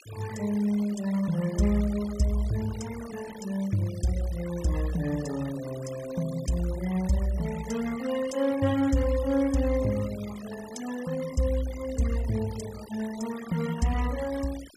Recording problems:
noise reduction artefacts; signal-to-artefact ratio 17 dB

